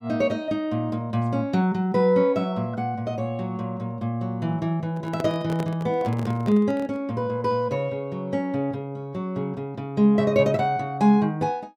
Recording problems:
microphone handling noise; from 5 to 7 s; peak -4 dB vs average level

